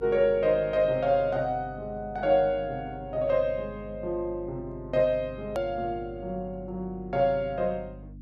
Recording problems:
hum; 50 Hz, harmonics up to 300 Hz, SNR 17 dB
click at an edit; at 5.5 s

